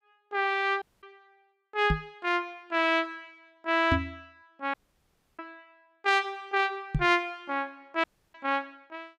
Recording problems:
audio cutting out; at 1 s, at 4.5 s for 0.5 s and at 8 s
microphone bump; at 2 s, at 4 s and at 7 s; peak +4 dB vs average level

